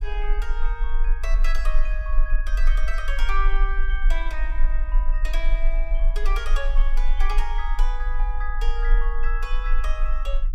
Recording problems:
rumble; below 34 Hz, strongest tone 22 Hz, SNR -7 dB

